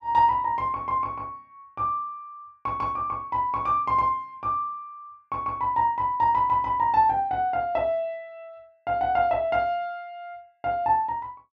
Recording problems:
none

